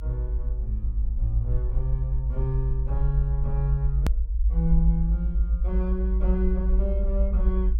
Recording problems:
rumble; below 56 Hz, strongest tone 52 Hz, SNR -5 dB
click at an edit; at 4 s

